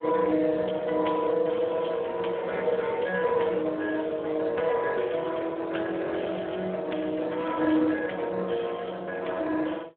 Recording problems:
phone line; 240 Hz to 3.6 kHz, Speex

